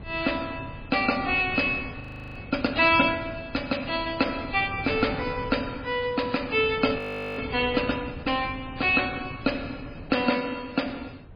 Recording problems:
lossy compression; MP3, log-spectral distance 6 dB, nothing above 4.2 kHz
wind on the microphone; below 240 Hz, SNR 15 dB
frozen audio; at 2 s and at 7 s

